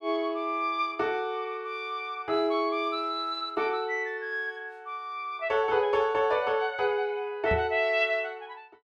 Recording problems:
microphone bump; at 7.5 s; peak -1 dB vs average level

